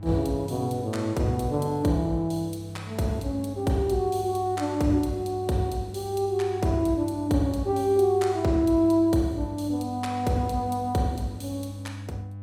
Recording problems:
mains hum; 50 Hz, harmonics up to 500 Hz, SNR 13 dB

